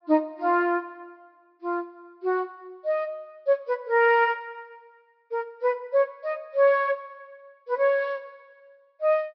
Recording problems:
low-pass filter; nothing above 5.5 kHz

